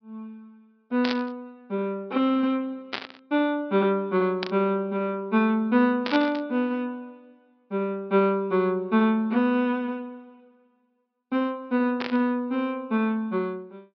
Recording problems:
low-pass filter; nothing above 5.5 kHz
static burst; 5 times, first at 1 s; peak -1 dB vs average level

